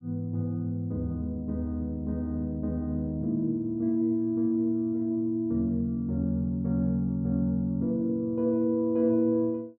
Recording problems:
none

